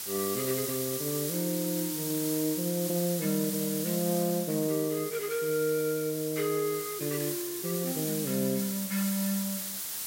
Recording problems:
hiss; slope +2 dB per octave, SNR 3 dB

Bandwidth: 16 kHz